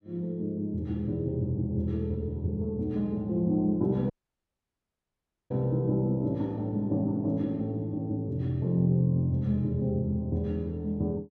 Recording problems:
dropout; at 4 s for 1.5 s

